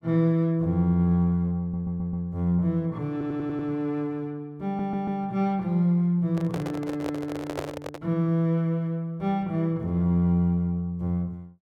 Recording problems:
stutter; at 1.5 s, at 3 s and at 4.5 s
microphone handling noise; from 6.5 to 8 s; peak -1 dB vs average level

